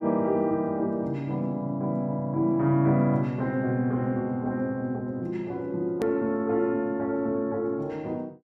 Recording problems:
hard cut with a click; at 6 s

